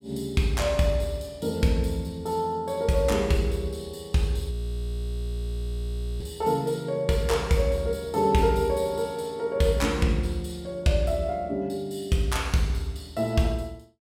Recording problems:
audio freezing; at 4.5 s for 1.5 s

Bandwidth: 16 kHz